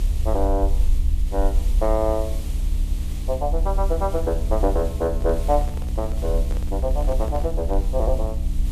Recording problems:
mains hum; 60 Hz, harmonics up to 300 Hz, SNR 7 dB
hiss; SNR 16 dB
rumble; below 62 Hz, strongest tone 36 Hz, SNR 0 dB
handling noise; from 5 to 8 s; peak -7 dB vs average level

